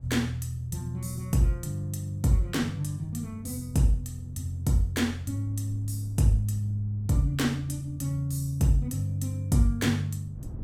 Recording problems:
wind noise; below 160 Hz, SNR 21 dB

